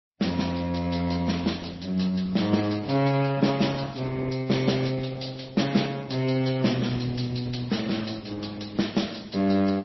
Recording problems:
lossy compression; Opus, then MP3, log-spectral distance 7 dB, nothing above 5.7 kHz

